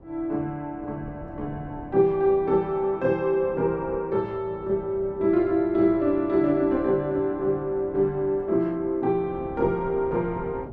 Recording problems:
wind noise; below 370 Hz, SNR 19 dB

